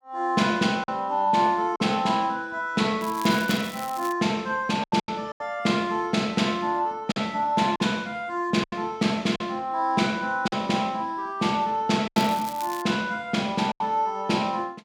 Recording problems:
lost packets; 5% of the sound replaced, filled with silence
crackling; from 3 to 4 s and at 12 s; loose cable, SNR 15 dB

